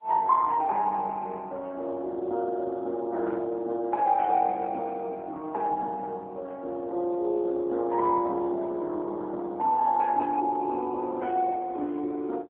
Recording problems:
phone line; 280 Hz to 3.4 kHz, AMR-NB

